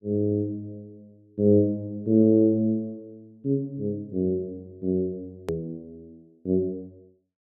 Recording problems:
edit click; at 5.5 s

